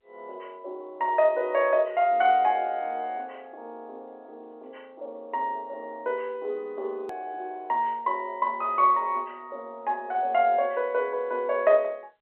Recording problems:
telephone audio; 320 Hz to 3.2 kHz, G.711
click at an edit; at 7 s

